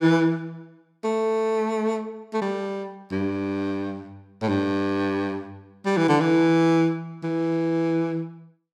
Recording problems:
none

